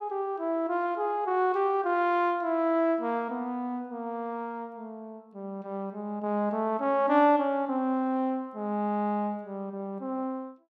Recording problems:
none

